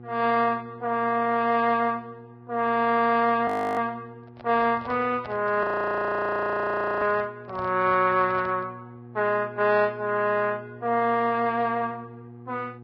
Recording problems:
codec artefacts; Vorbis, log-spectral distance 2 dB, nothing above 13.1 kHz
electrical hum; 60 Hz, harmonics up to 840 Hz, SNR 21 dB
frozen audio; at 3.5 s and at 5.5 s for 1.5 s
microphone handling noise; from 4 to 8.5 s; peak -12 dB vs average level

